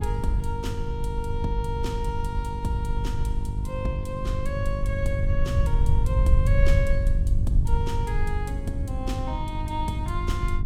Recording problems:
hum; 50 Hz, harmonics up to 750 Hz, SNR 4 dB
rumble; below 84 Hz, SNR -5 dB

